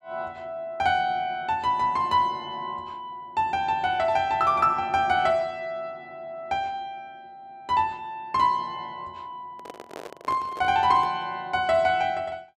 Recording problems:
microphone handling noise; from 9.5 to 11 s; peak -9 dB vs average level

